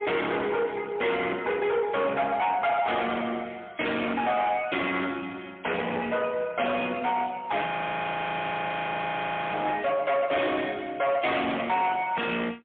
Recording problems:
phone line; 240 Hz to 3.4 kHz, AMR-NB, then MP3
distorted audio; hard clipping, signal-to-distortion ratio 7 dB
frozen audio; at 7.5 s for 2 s

